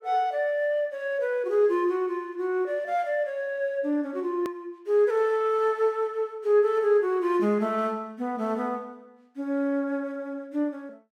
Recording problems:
hard cut with a click; at 4.5 s

